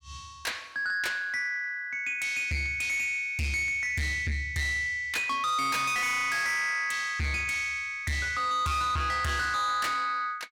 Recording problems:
distorted audio; soft clipping, signal-to-distortion ratio 6 dB

